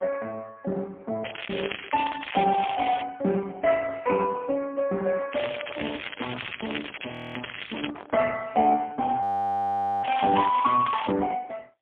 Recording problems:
phone line; 260 Hz to 3.2 kHz, AMR-NB, then MP3
crackle; from 1 to 3 s, from 5.5 to 8 s and from 10 to 11 s; loose cable, SNR 10 dB
handling noise; from 5 to 8 s; peak -10 dB vs average level
audio freezing; at 7 s and at 9 s for 1 s

